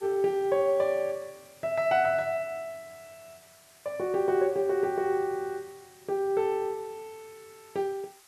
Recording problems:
hiss; slope +1 dB per octave, SNR 26 dB

